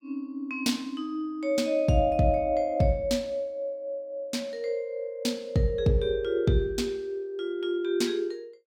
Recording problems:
none

